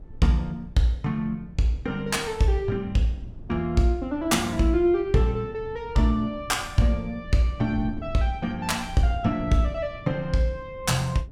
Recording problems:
wind on the microphone; below 130 Hz, SNR 17 dB

